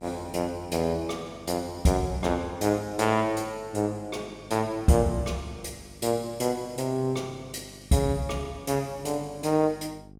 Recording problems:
mains hum; 50 Hz, harmonics up to 750 Hz, SNR 22 dB

